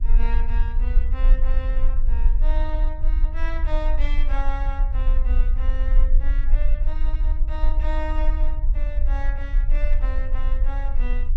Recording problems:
rumble; below 40 Hz, strongest tone 18 Hz, SNR -12 dB

